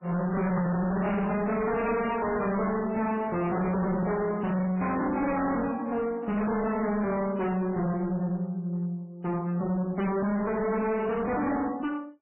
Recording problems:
codec artefacts; MP3, log-spectral distance 3 dB, nothing above 2.6 kHz
distortion; hard clipping, signal-to-distortion ratio 6 dB

